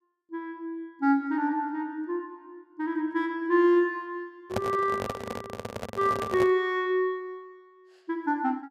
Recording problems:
microphone handling noise; from 4.5 to 6.5 s; peak +2 dB vs average level

